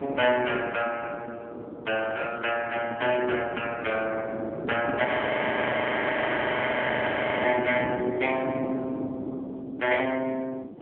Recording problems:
telephone audio; 220 Hz to 3.1 kHz, AMR-NB
wind on the microphone; below 500 Hz, SNR 7 dB
frozen audio; at 5 s for 2.5 s

